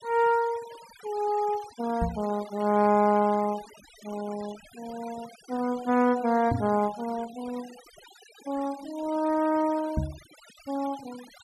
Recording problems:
noise reduction artefacts; signal-to-artefact ratio 20 dB
knock on the microphone; at 2 s, at 6.5 s and at 10 s; peak +3 dB vs average level

